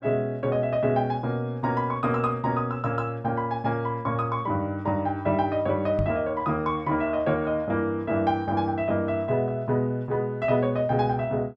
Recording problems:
microphone bump; at 6 s; peak +1 dB vs average level

